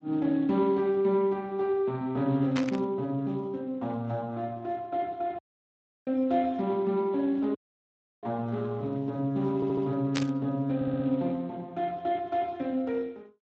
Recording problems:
lossy compression; Speex, log-spectral distance 2 dB
burst of static; at 2.5 s and at 10 s; peak +1 dB vs average level
dropout; at 5.5 s for 0.5 s and at 7.5 s for 0.5 s
stutter; at 9.5 s and at 11 s

